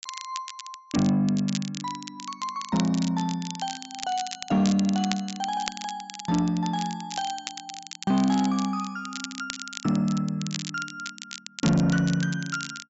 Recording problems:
treble missing; nothing above 8 kHz
distorted audio; soft clipping, signal-to-distortion ratio 12 dB
crackling; vinyl, SNR 10 dB

